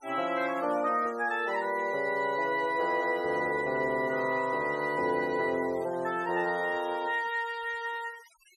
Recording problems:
denoising artefacts; signal-to-artefact ratio 21 dB

